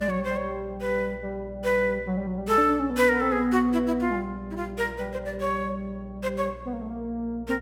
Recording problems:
hum; 60 Hz, harmonics up to 660 Hz, SNR 18 dB

